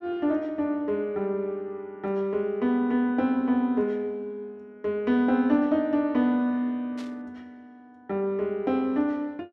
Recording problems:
static burst; at 7 s; peak -15 dB vs average level

